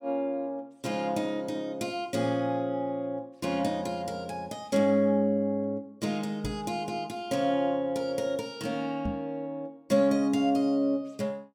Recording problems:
knock on the microphone; at 6.5 s and at 9 s; peak 0 dB vs average level

